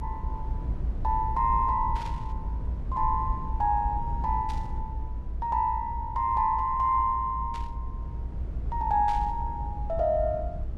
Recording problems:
rumble; below 70 Hz, SNR 6 dB
burst of static; 4 times, first at 2 s; peak -12 dB vs average level

